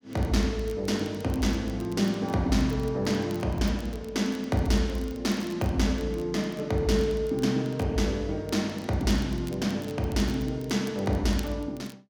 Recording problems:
crackle; vinyl, SNR 24 dB

